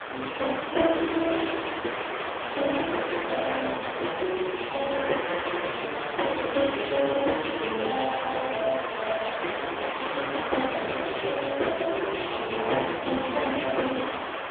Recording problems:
phone line; 260 Hz to 3.5 kHz, AMR-NB
background hiss; SNR 4 dB

